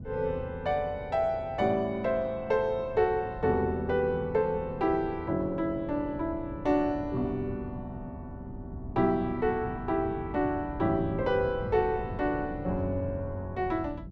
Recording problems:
wind on the microphone; below 180 Hz, SNR 13 dB

